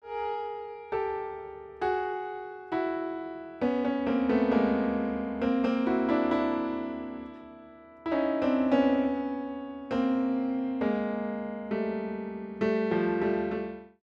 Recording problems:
none

